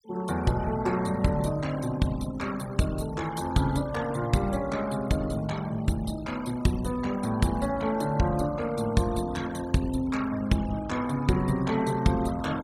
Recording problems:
denoising artefacts; signal-to-artefact ratio 17 dB

